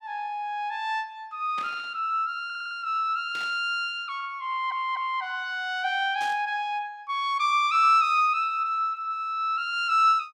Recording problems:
burst of static; at 1.5 s, at 3.5 s and at 6 s; peak -11 dB vs average level
stutter; at 2.5 s and at 4.5 s

